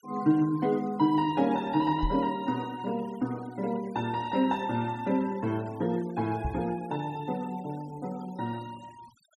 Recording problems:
denoising artefacts; signal-to-artefact ratio 23 dB
knock on the microphone; at 2 s and at 6.5 s; peak +1 dB vs average level

